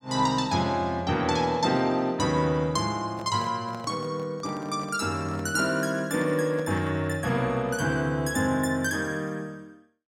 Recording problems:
handling noise; from 3 to 7 s; peak -10 dB vs average level

